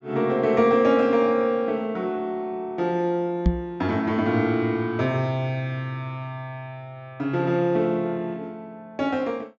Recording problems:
treble cut off; nothing above 8 kHz
microphone bump; at 3.5 s; peak +7 dB vs average level

